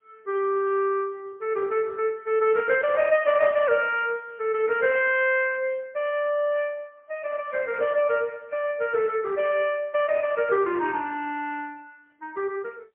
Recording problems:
telephone audio; 320 Hz to 3.1 kHz, AMR-NB, then MP3

